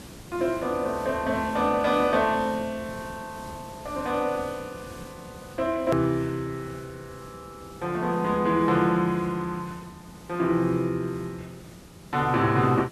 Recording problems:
background hiss; SNR 19 dB
hard cut with a click; at 6 s

